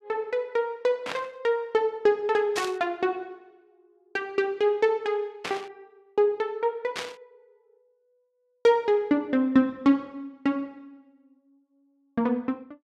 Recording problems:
static burst; 4 times, first at 1 s; peak -2 dB vs average level

